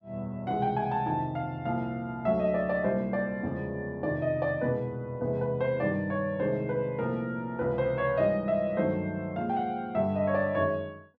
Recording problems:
none

